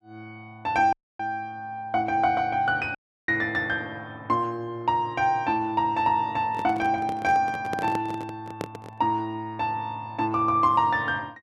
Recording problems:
audio cutting out; at 1 s and at 3 s
handling noise; from 6.5 to 9 s; peak -3 dB vs average level

